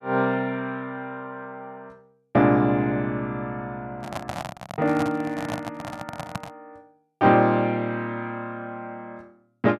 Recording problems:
handling noise; from 4 to 6.5 s; peak -2 dB vs average level

